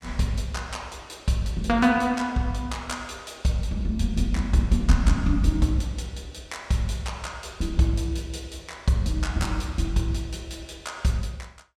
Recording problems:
none

